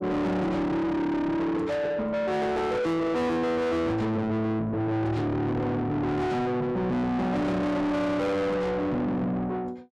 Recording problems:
distortion; soft clipping, signal-to-distortion ratio 7 dB

